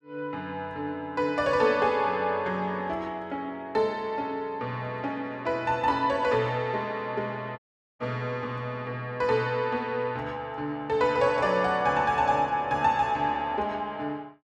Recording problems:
audio cutting out; at 7.5 s

